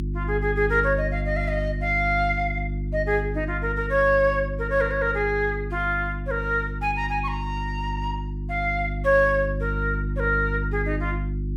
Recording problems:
mains hum; 50 Hz, harmonics up to 350 Hz, SNR 5 dB

